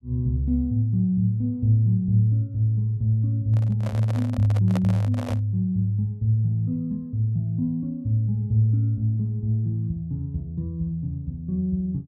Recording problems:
microphone handling noise; from 3.5 to 5.5 s; peak -4 dB vs average level

